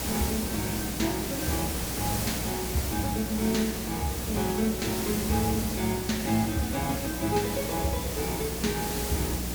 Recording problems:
hum; 60 Hz, harmonics up to 300 Hz, SNR 9 dB
background hiss; SNR 2 dB

